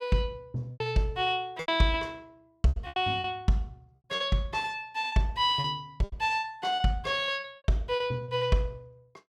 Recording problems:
packet loss; 9% of the sound replaced, filled with repeated pitch periods

